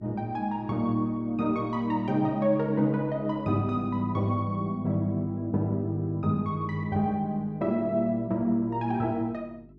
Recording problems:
hum; 50 Hz, harmonics up to 400 Hz, SNR 25 dB

